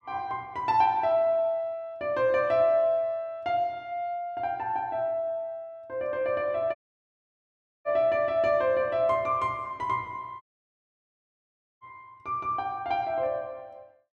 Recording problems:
dropout; at 7 s for 1 s and at 10 s for 1.5 s

